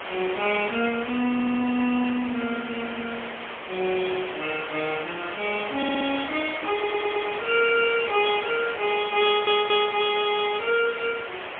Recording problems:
telephone audio; 240 Hz to 3.4 kHz, AMR-NB, then MP3
background hiss; SNR 9 dB
audio stuttering; 4 times, first at 1.5 s

